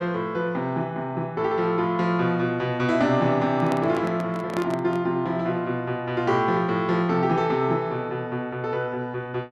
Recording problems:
microphone handling noise; from 3.5 to 5 s; peak -3 dB vs average level

